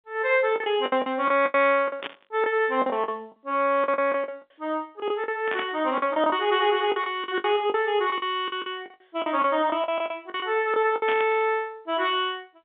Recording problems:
phone line; 130 Hz to 3.6 kHz, G.711
lost packets; 13% of the sound replaced, filled with the last packet
static burst; at 2 s, at 5.5 s and at 11 s; peak -3 dB vs average level

